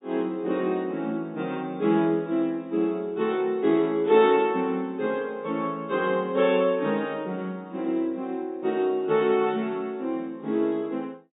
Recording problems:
low-pass filter; nothing above 4 kHz

